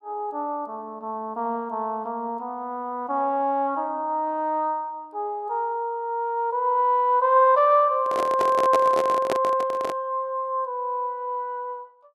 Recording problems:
microphone handling noise; from 8 to 10 s; peak +2 dB vs average level

